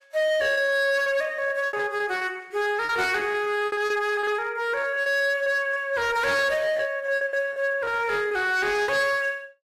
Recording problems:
lossy codec; AAC, log-spectral distance 2 dB, nothing above 15.1 kHz
distorted audio; hard clipping, signal-to-distortion ratio 12 dB
packet loss; 13% of the sound replaced, filled with repeated pitch periods

